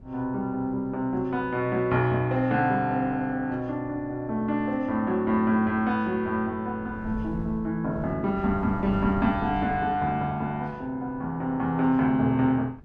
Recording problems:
wind on the microphone; below 200 Hz, SNR 16 dB

